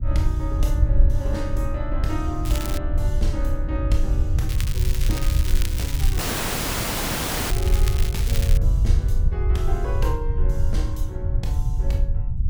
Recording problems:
rumble; below 74 Hz, SNR -8 dB
wind noise; below 58 Hz, SNR 6 dB
crackle; at 2.5 s and from 4.5 to 8.5 s; loose cable, SNR 2 dB
dropout; at 6 s for 1.5 s

